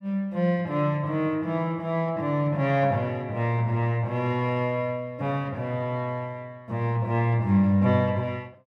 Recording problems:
none

